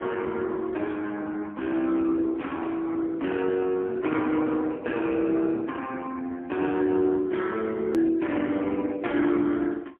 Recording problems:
phone line; 240 Hz to 3.3 kHz, AMR-NB, then MP3
click at an edit; at 8 s

